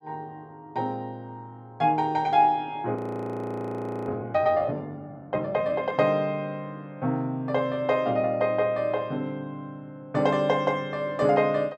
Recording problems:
audio freezing; at 3 s for 1 s

